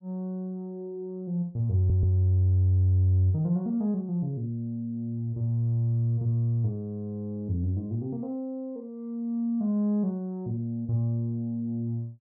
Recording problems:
stutter; at 2 s

